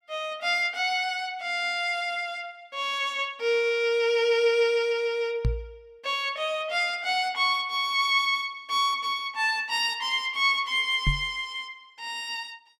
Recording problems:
microphone thump; at 5.5 s and at 11 s; peak +3 dB vs average level

